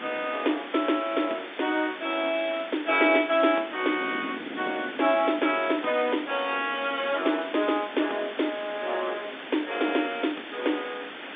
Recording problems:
telephone audio; 240 Hz to 3.6 kHz, G.711
hiss; SNR 12 dB
wind noise; below 390 Hz, SNR 18 dB

